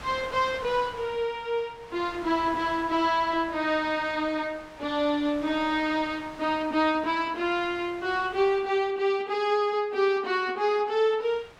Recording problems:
wind on the microphone; below 2.4 kHz, SNR 19 dB

